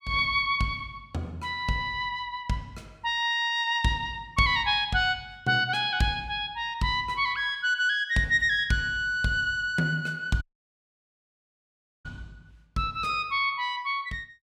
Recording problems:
audio cutting out; at 10 s for 1.5 s

